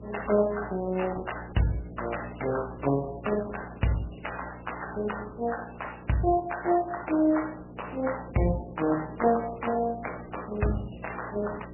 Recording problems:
lossy compression; Opus, then MP3, log-spectral distance 9 dB, nothing above 2.9 kHz
electrical hum; 60 Hz, harmonics up to 660 Hz, SNR 14 dB

